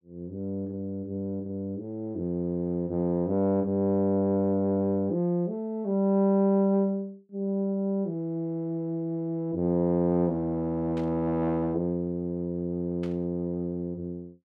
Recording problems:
burst of static; at 11 s and at 13 s; peak -14 dB vs average level

